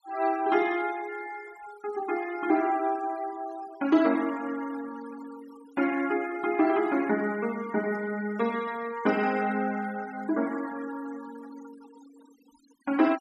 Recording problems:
denoising artefacts; signal-to-artefact ratio 19 dB

